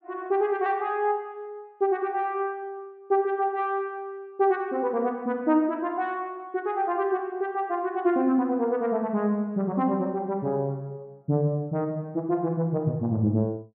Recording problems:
none

